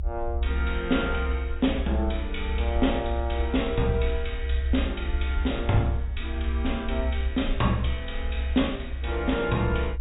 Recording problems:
treble cut off; nothing above 4 kHz
low-frequency rumble; below 68 Hz, strongest tone 66 Hz, SNR 2 dB

